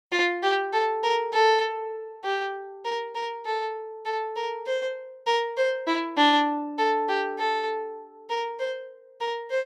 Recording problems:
none

